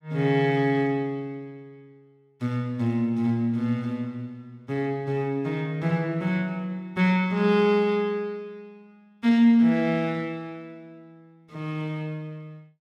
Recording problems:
none

